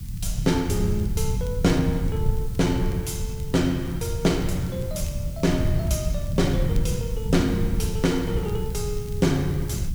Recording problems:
background hiss; slope +2 dB per octave, SNR 20 dB
low-frequency rumble; below 130 Hz, SNR 3 dB
crackling; vinyl, SNR 28 dB

